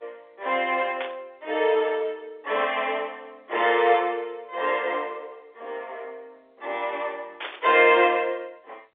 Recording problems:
phone line; 320 Hz to 3.6 kHz, G.711
burst of static; at 1 s and at 7.5 s; peak -5 dB vs average level

